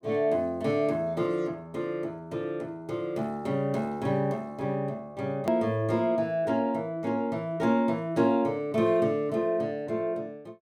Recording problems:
hard cut with a click; at 5.5 s

